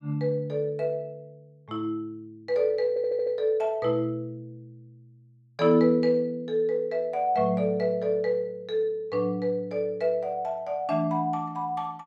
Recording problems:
stutter; at 3 s

